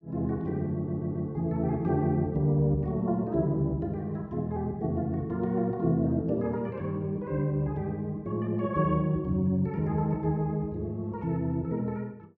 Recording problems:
audio stuttering; at 1 s

